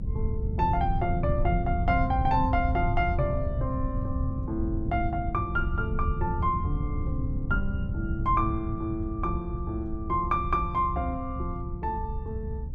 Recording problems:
low-frequency rumble; below 110 Hz, SNR 2 dB

